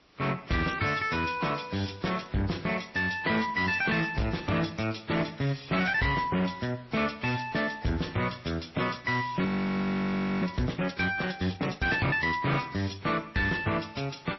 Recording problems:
codec artefacts; MP3, then AAC, log-spectral distance 7 dB, nothing above 5.7 kHz
distortion; soft clipping, signal-to-distortion ratio 10 dB
hiss; slope -3 dB per octave, SNR 29 dB
frozen audio; at 9.5 s for 1 s

